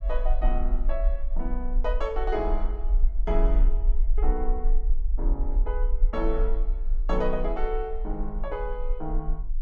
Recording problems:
rumble; below 38 Hz, strongest tone 26 Hz, SNR -4 dB

